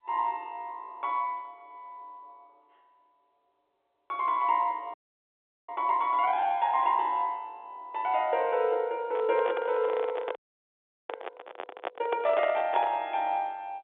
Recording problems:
telephone audio; 320 Hz to 3.8 kHz, G.711
frozen audio; at 5 s for 0.5 s and at 10 s for 0.5 s
handling noise; from 9 to 13 s; peak -1 dB vs average level

